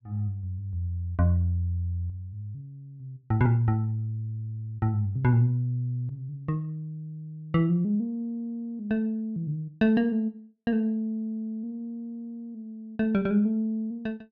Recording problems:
none

